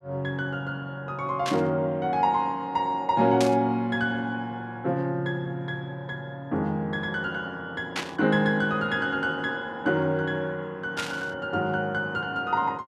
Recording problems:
burst of static; 4 times, first at 1.5 s; peak +1 dB vs average level

